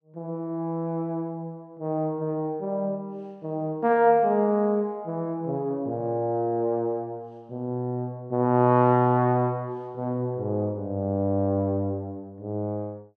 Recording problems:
none

